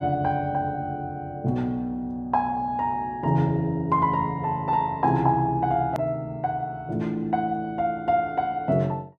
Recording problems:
click at an edit; at 6 s

